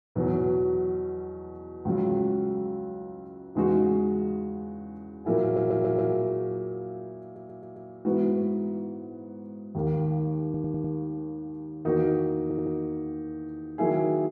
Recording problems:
audio stuttering; 4 times, first at 5.5 s

